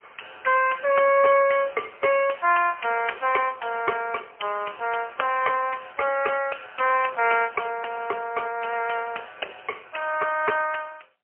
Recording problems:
phone line; 340 Hz to 2.9 kHz, AMR-NB, then MP3

